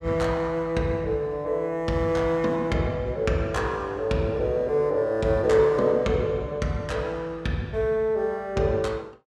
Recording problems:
none

